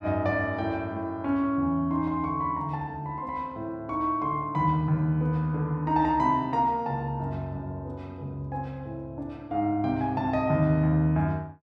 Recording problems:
none

